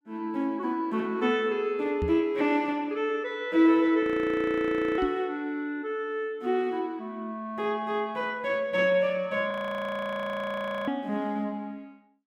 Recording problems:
microphone thump; at 2 s and at 5 s; peak 0 dB vs average level
frozen audio; at 4 s for 1 s and at 9.5 s for 1.5 s

